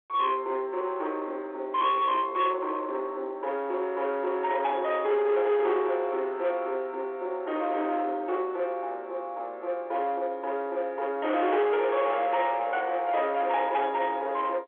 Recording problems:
telephone audio; 320 Hz to 3.8 kHz, G.711
distortion; soft clipping, signal-to-distortion ratio 11 dB

